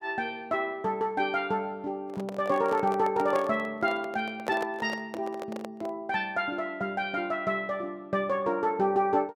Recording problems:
handling noise; from 2 to 6 s; peak 0 dB vs average level

